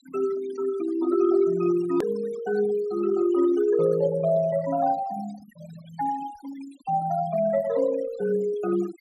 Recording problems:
denoising artefacts; signal-to-artefact ratio 19 dB
click at an edit; at 2 s

